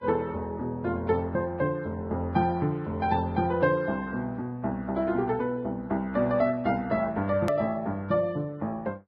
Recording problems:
lossy codec; Vorbis, log-spectral distance 2 dB, nothing above 13.1 kHz
edit click; at 7.5 s

